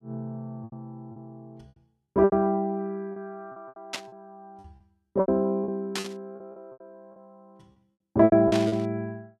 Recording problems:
lost packets; 13% of the sound replaced, filled with repeated pitch periods
static burst; at 4 s, at 6 s and at 8.5 s; peak -1 dB vs average level

